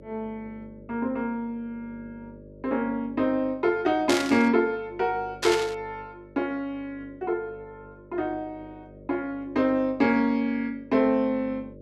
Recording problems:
electrical hum; 50 Hz, harmonics up to 600 Hz, SNR 22 dB
burst of static; at 4 s and at 5.5 s; peak +3 dB vs average level

